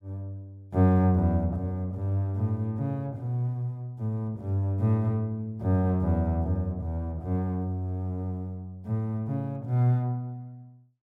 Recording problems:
none

